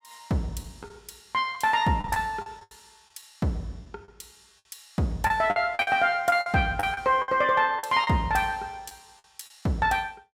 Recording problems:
packet loss; 9% of the sound replaced, filled with the last packet

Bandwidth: 16 kHz